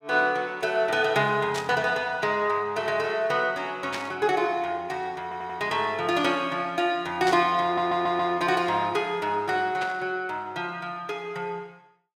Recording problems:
burst of static; 4 times, first at 1.5 s; peak -3 dB vs average level
stutter; at 5 s and at 7.5 s

